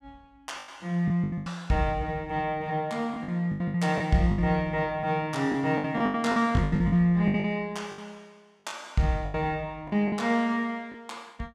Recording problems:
lost packets; 12% of the sound replaced, filled with the last packet

